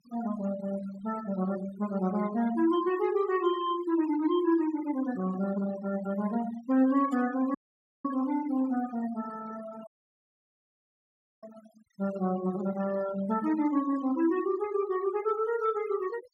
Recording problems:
denoising artefacts; signal-to-artefact ratio 16 dB
audio cutting out; at 7.5 s and at 10 s for 1.5 s

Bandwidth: 16 kHz